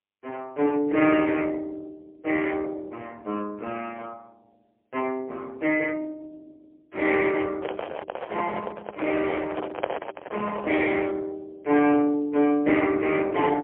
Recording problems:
telephone audio; 240 Hz to 3.3 kHz, AMR-NB, then MP3
microphone handling noise; from 7.5 to 11 s; peak +1 dB vs average level

